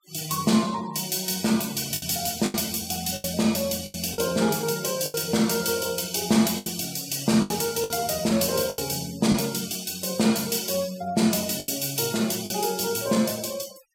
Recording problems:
denoising artefacts; signal-to-artefact ratio 19 dB
lost packets; 6% of the sound replaced, filled with the last packet

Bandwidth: 16 kHz